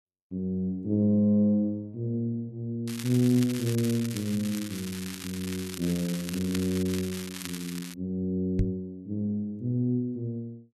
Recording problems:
crackling; from 3 to 8 s; loose cable, SNR 10 dB
knock on the microphone; at 8.5 s; peak +5 dB vs average level

